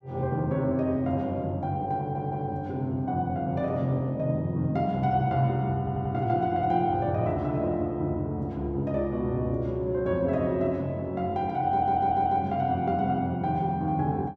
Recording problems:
audio stuttering; at 2 s, at 6 s and at 12 s

